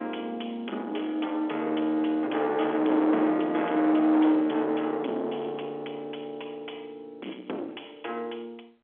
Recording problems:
telephone audio; 220 Hz to 3.6 kHz, G.711
distorted audio; soft clipping, signal-to-distortion ratio 8 dB

